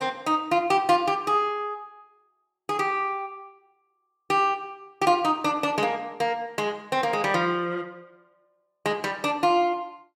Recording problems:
none

